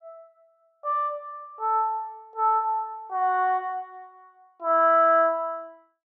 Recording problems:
none

